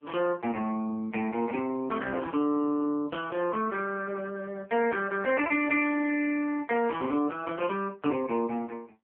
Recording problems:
telephone audio; 220 Hz to 3.2 kHz, AMR-NB

